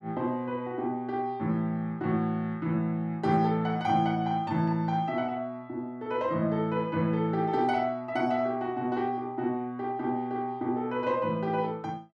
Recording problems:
none

